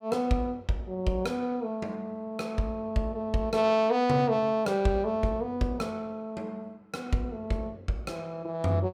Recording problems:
none

